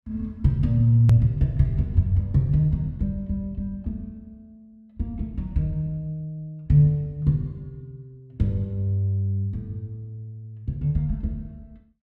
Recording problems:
edit click; at 1 s

